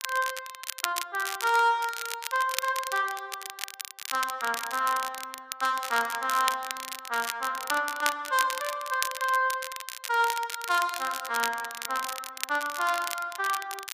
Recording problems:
crackling; vinyl, SNR 7 dB

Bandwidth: 15 kHz